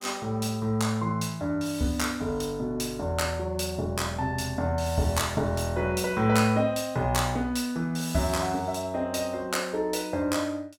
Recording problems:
none

